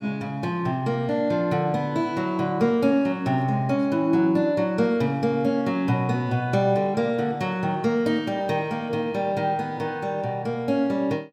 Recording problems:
none

